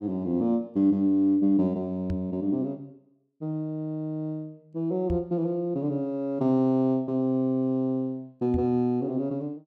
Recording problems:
microphone bump; at 2 s, at 5 s and at 8.5 s; peak -2 dB vs average level

